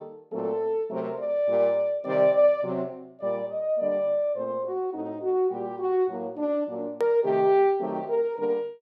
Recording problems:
edit click; at 7 s

